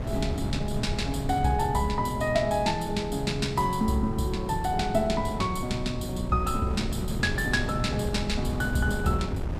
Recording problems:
wind on the microphone; below 180 Hz, SNR 6 dB

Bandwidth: 15 kHz